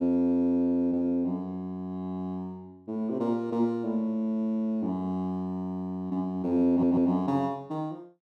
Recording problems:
stutter; at 6.5 s

